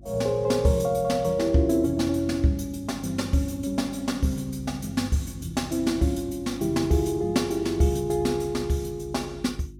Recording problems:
hum; 50 Hz, harmonics up to 350 Hz, SNR 21 dB

